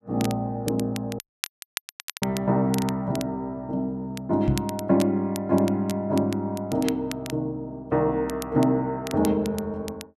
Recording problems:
crackling; vinyl, SNR 14 dB
dropout; at 1 s for 1 s
microphone bump; at 4.5 s; peak +5 dB vs average level

